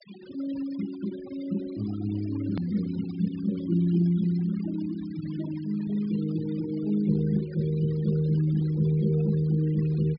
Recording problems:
treble missing; nothing above 5.5 kHz
noise reduction artefacts; signal-to-artefact ratio 21 dB
edit click; at 2.5 s

